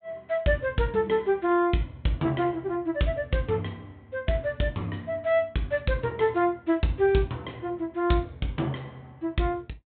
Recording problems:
treble missing; nothing above 4 kHz

